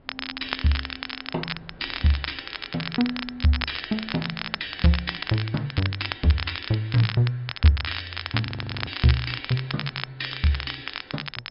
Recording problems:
treble missing; nothing above 5.2 kHz
lossy compression; MP3, log-spectral distance 3 dB
wind noise; below 470 Hz, SNR 27 dB
crackling; vinyl, SNR 6 dB
frozen audio; at 8.5 s

